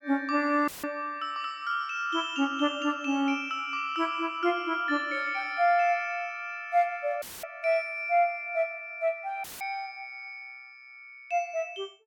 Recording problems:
audio cutting out; at 0.5 s, at 7 s and at 9.5 s; filled with static

